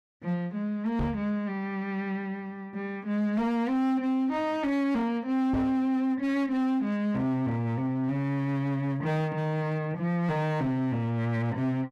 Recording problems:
distortion; hard clipping, signal-to-distortion ratio 11 dB
microphone bump; at 1 s and at 5.5 s; peak +1 dB vs average level

